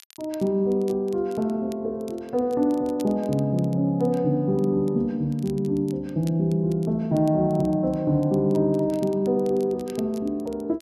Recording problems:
crackling; vinyl, SNR 27 dB

